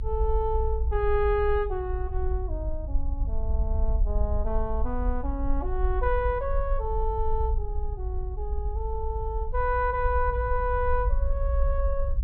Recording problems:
low-pass filter; nothing above 4.4 kHz
low-frequency rumble; below 58 Hz, SNR 1 dB

